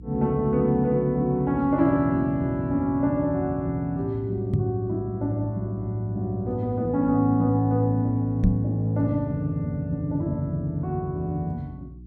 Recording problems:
hum; 60 Hz, harmonics up to 360 Hz, SNR 19 dB
knock on the microphone; at 4.5 s and at 8.5 s; peak +7 dB vs average level

